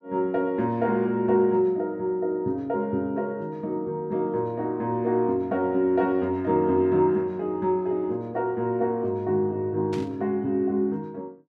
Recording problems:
static burst; at 10 s; peak -11 dB vs average level

